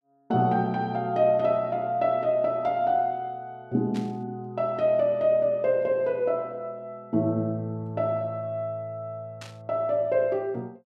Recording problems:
burst of static; at 4 s and at 9.5 s; peak -12 dB vs average level

